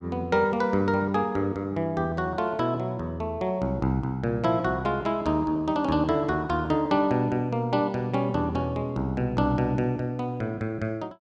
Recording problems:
none

